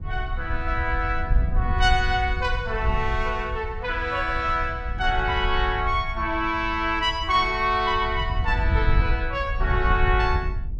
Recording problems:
wind on the microphone; below 76 Hz, SNR 4 dB

